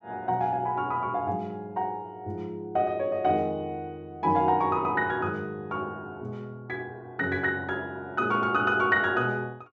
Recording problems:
none

